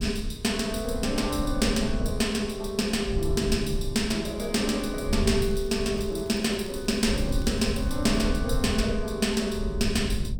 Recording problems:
low-frequency rumble; below 100 Hz, SNR 7 dB
crackle; from 5.5 to 8.5 s; loose cable, SNR 26 dB

